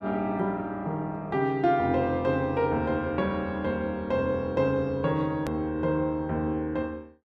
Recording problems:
hard cut with a click; at 5.5 s

